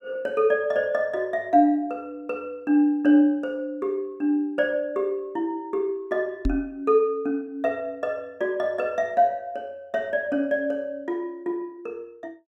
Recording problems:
microphone thump; at 6.5 s; peak +3 dB vs average level

